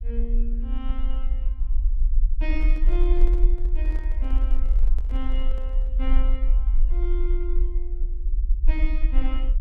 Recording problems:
low-frequency rumble; below 42 Hz, strongest tone 22 Hz, SNR -11 dB
handling noise; from 2.5 to 6 s; peak -5 dB vs average level

